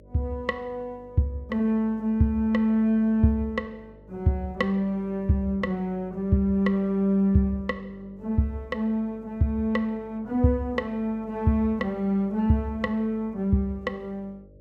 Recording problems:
hum; 50 Hz, harmonics up to 600 Hz, SNR 25 dB

